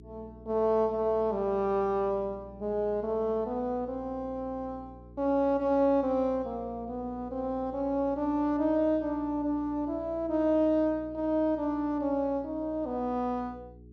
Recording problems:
electrical hum; 60 Hz, harmonics up to 420 Hz, SNR 21 dB

